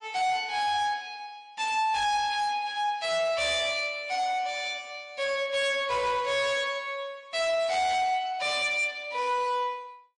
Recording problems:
lossy codec; MP3, log-spectral distance 2 dB, nothing above 8.2 kHz
distorted audio; hard clipping, signal-to-distortion ratio 10 dB

